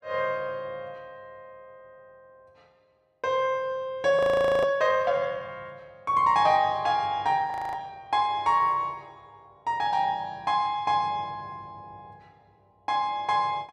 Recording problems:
audio freezing; at 4 s and at 7.5 s

